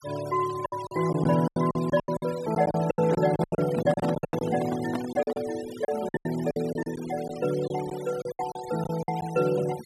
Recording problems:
denoising artefacts; signal-to-artefact ratio 16 dB
lost packets; 16% of the sound replaced, filled with silence
handling noise; from 3 to 5.5 s; peak -2 dB vs average level

